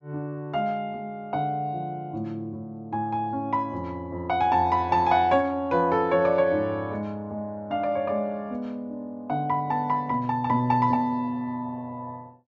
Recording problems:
treble cut off; nothing above 8 kHz

